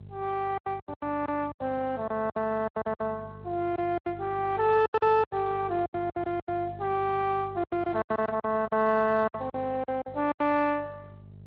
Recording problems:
lossy compression; Vorbis, then Speex, log-spectral distance 3 dB
hum; 50 Hz, harmonics up to 600 Hz, SNR 17 dB
packet loss; 16% of the sound replaced, filled with silence

